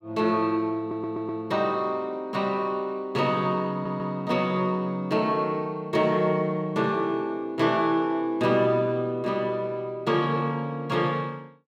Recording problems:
stutter; at 1 s and at 3.5 s

